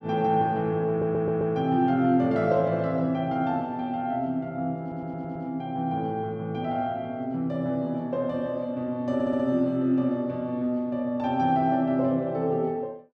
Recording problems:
audio stuttering; at 1 s, at 5 s and at 9 s

